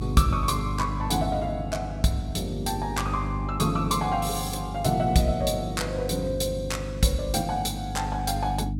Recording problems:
mains hum; 50 Hz, harmonics up to 300 Hz, SNR 6 dB

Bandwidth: 16.5 kHz